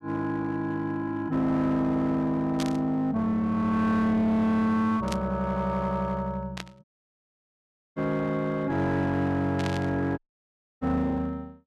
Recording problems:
distortion; hard clipping, uneven, signal-to-distortion ratio 11 dB
burst of static; 4 times, first at 2.5 s; peak -4 dB vs average level
dropout; at 7 s for 1 s and at 10 s for 0.5 s

